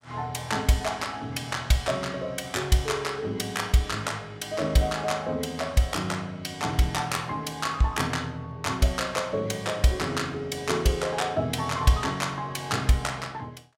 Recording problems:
none

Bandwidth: 16.5 kHz